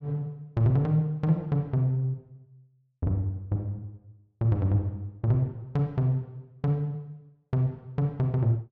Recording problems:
none

